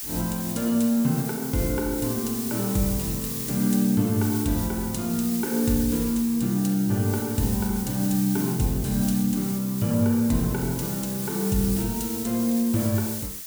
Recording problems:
hiss; slope +3 dB per octave, SNR 7 dB

